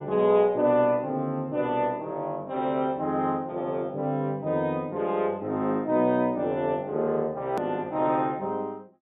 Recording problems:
treble cut off; nothing above 4 kHz
hard cut with a click; at 7.5 s

